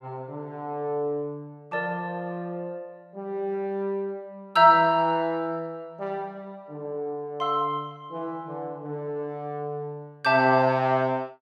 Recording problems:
none

